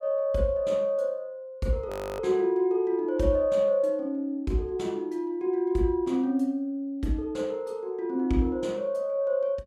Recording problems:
audio freezing; at 2 s

